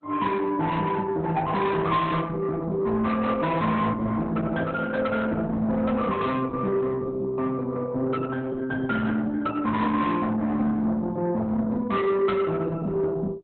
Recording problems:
lossy compression; Opus, log-spectral distance 2 dB, nothing above 4 kHz
distorted audio; soft clipping, signal-to-distortion ratio 10 dB

